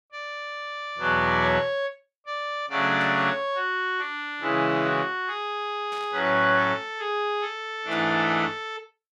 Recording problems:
burst of static; at 3 s, at 6 s and at 8 s; peak -14 dB vs average level

